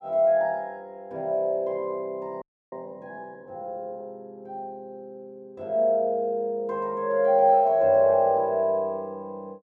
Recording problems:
audio freezing; at 2.5 s

